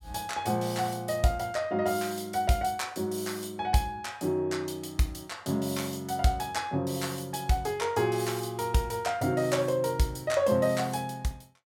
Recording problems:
none

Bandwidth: 17 kHz